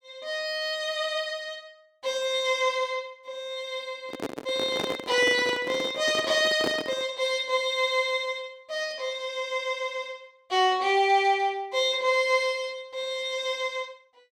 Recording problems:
handling noise; from 4 to 7 s; peak +1 dB vs average level

